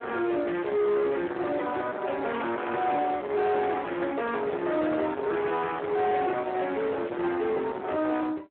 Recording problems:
telephone audio; 240 Hz to 3.4 kHz, Speex
distorted audio; soft clipping, signal-to-distortion ratio 8 dB

